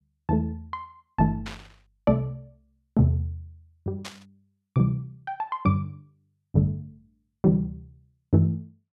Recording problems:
burst of static; at 1.5 s and at 4 s; peak -6 dB vs average level

